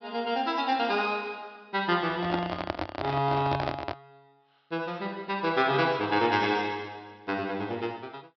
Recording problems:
low-pass filter; nothing above 5.5 kHz
handling noise; from 2 to 4 s; peak +2 dB vs average level

